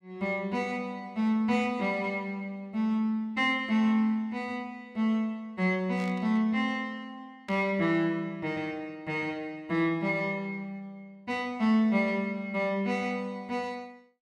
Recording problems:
burst of static; at 6 s and at 7.5 s; peak -11 dB vs average level

